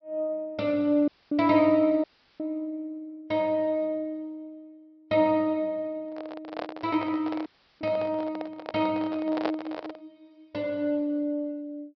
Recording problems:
treble missing; nothing above 5.5 kHz
audio cutting out; at 1 s, at 2 s and at 7.5 s
handling noise; from 6 to 10 s; peak +2 dB vs average level

